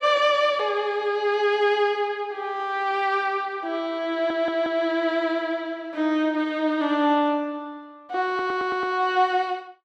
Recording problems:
audio stuttering; at 4 s and at 8.5 s

